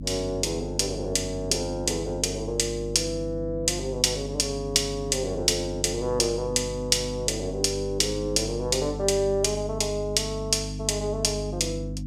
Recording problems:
electrical hum; 50 Hz, harmonics up to 300 Hz, SNR 9 dB

